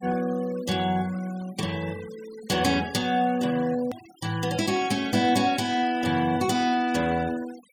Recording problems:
denoising artefacts; signal-to-artefact ratio 18 dB
click at an edit; at 4 s

